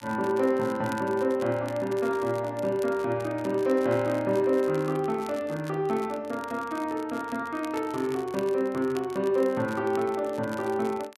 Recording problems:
crackling; vinyl, SNR 21 dB

